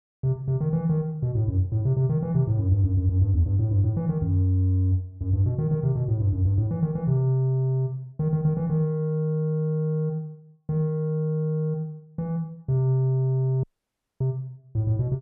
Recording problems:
audio cutting out; at 14 s for 0.5 s

